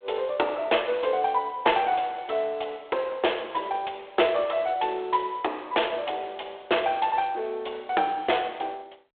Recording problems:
telephone audio; 320 Hz to 3.6 kHz, G.726

